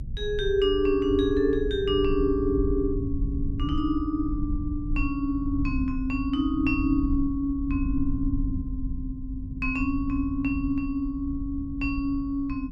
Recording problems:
low-frequency rumble; below 90 Hz, SNR 7 dB

